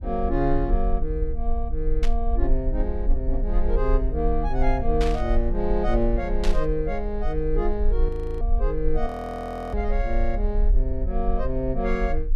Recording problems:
rumble; below 44 Hz, SNR 0 dB
static burst; at 2 s, at 5 s and at 6.5 s; peak -1 dB vs average level
frozen audio; at 8 s and at 9 s for 0.5 s

